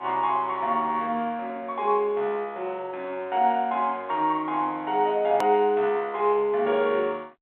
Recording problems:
phone line; 260 Hz to 3.8 kHz, G.726
click at an edit; at 5.5 s

